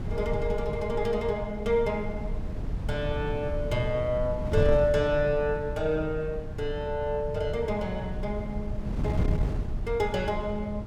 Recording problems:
wind noise; below 140 Hz, SNR 5 dB

